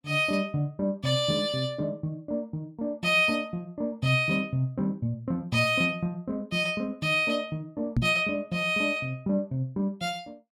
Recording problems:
microphone thump; at 8 s; peak +5 dB vs average level

